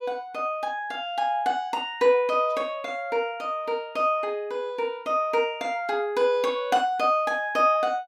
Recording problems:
none

